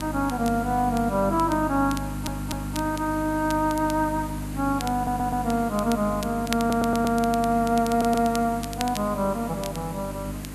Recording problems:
electrical hum; 50 Hz, harmonics up to 300 Hz, SNR 9 dB
hiss; slope -4 dB per octave, SNR 16 dB
crackling; vinyl, SNR 15 dB
stutter; 4 times, first at 2 s

